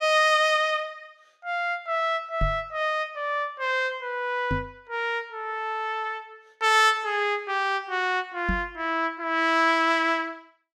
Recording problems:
knock on the microphone; at 2.5 s, at 4.5 s and at 8.5 s; peak 0 dB vs average level

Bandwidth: 16.5 kHz